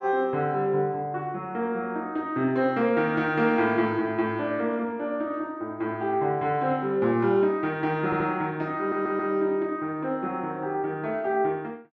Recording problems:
audio stuttering; at 8 s and at 9 s

